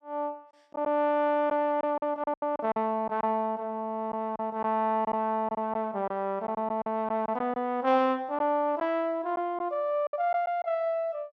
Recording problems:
lost packets; 7% of the sound replaced, filled with silence

